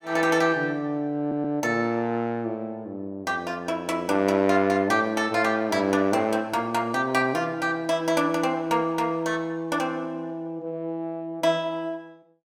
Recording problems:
stutter; at 1 s

